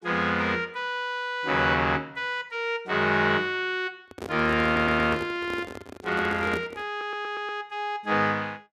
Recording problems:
handling noise; from 4 to 7 s; peak -4 dB vs average level
stutter; at 4.5 s and at 7 s

